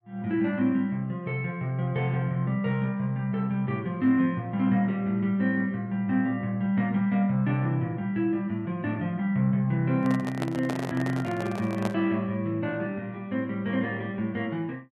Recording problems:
handling noise; from 10 to 12 s; peak -2 dB vs average level

